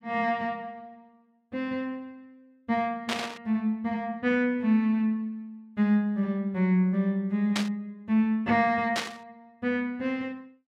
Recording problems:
static burst; at 3 s, at 7.5 s and at 9 s; peak +2 dB vs average level

